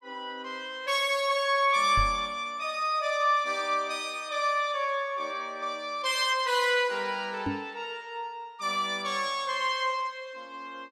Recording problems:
microphone bump; at 2 s and at 7.5 s; peak 0 dB vs average level

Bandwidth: 15.5 kHz